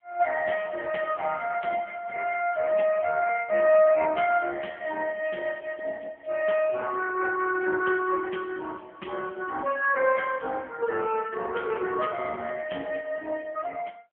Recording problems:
telephone audio; 280 Hz to 3 kHz, AMR-NB

